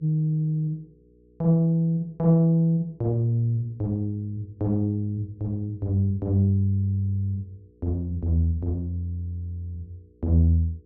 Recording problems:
electrical hum; 60 Hz, harmonics up to 480 Hz, SNR 32 dB

